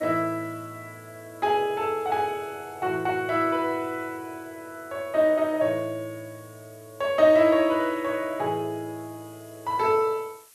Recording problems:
hiss; slope +2 dB per octave, SNR 27 dB

